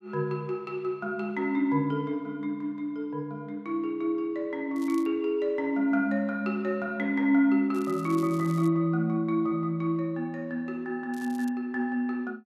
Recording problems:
crackling; at 5 s, at 7.5 s and at 11 s; loose cable, SNR 23 dB

